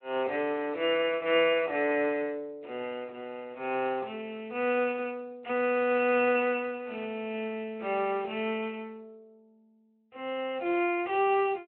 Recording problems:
telephone audio; 300 Hz to 3.1 kHz, Speex

